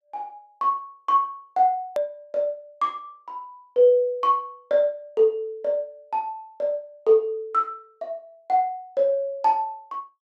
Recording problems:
edit click; at 2 s

